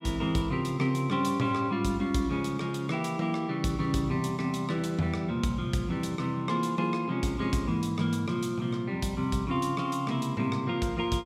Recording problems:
none

